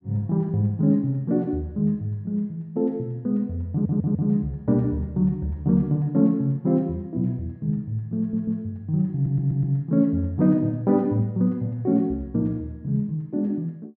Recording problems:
stutter; at 3.5 s, at 8 s and at 9 s

